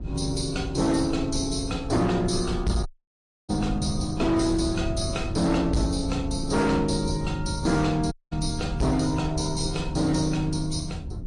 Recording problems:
lossy codec; AAC, then MP3, log-spectral distance 4 dB
distorted audio; hard clipping, signal-to-distortion ratio 11 dB
wind noise; below 130 Hz, SNR 8 dB
audio cutting out; at 3 s for 0.5 s and at 8 s

